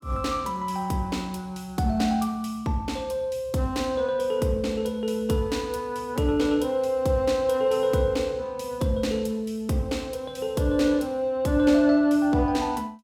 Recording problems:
none

